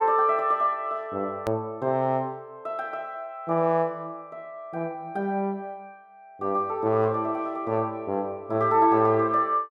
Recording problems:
hard cut with a click; at 1.5 s

